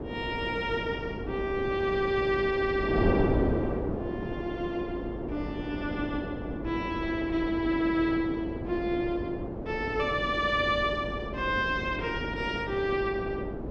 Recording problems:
hum; 50 Hz, harmonics up to 550 Hz, SNR 16 dB
wind on the microphone; below 480 Hz, SNR 4 dB

